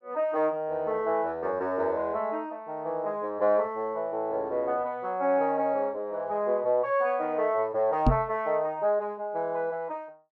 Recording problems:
microphone bump; at 8 s; peak +8 dB vs average level

